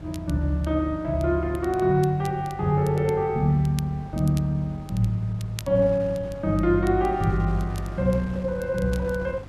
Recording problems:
mains hum; 50 Hz, harmonics up to 400 Hz, SNR 18 dB
wind noise; below 830 Hz, SNR 22 dB
crackle; vinyl, SNR 24 dB

